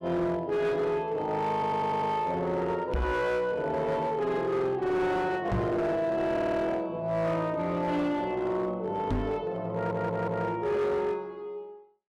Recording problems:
distorted audio; hard clipping, signal-to-distortion ratio 10 dB
audio stuttering; at 1.5 s, at 6.5 s and at 9.5 s
microphone thump; at 3 s, at 5.5 s and at 9 s; peak +3 dB vs average level

